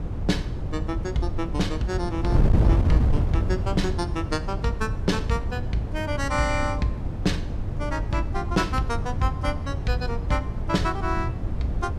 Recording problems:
wind noise; below 130 Hz, SNR 0 dB

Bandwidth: 14.5 kHz